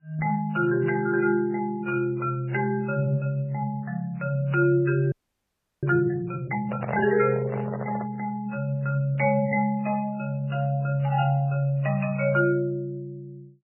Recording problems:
codec artefacts; MP3, then AAC, log-spectral distance 2 dB
frozen audio; at 5 s for 0.5 s
handling noise; from 6.5 to 8 s; peak -4 dB vs average level

